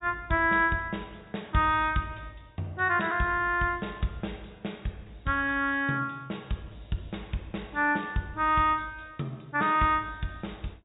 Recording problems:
low-pass filter; nothing above 4 kHz

